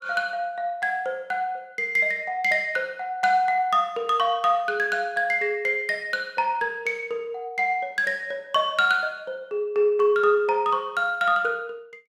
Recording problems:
none

